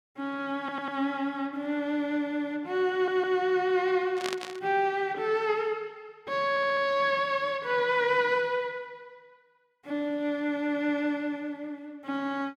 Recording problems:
audio stuttering; at 0.5 s, at 3 s and at 6.5 s
burst of static; at 4 s; peak -1 dB vs average level

